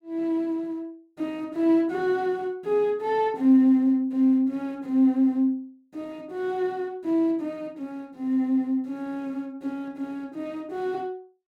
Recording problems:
none

